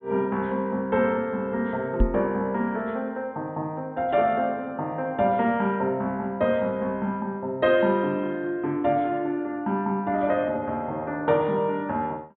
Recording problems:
low-pass filter; nothing above 4 kHz
microphone thump; at 2 s; peak +6 dB vs average level

